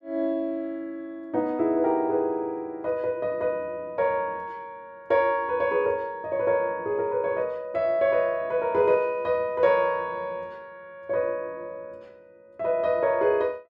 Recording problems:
none

